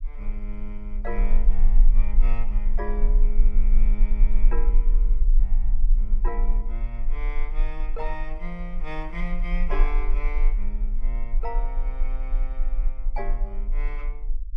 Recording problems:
rumble; below 34 Hz, strongest tone 24 Hz, SNR -11 dB

